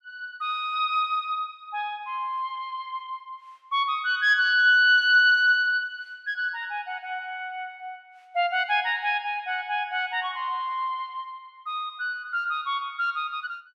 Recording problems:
none

